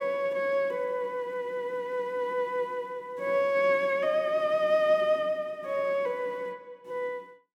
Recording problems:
none

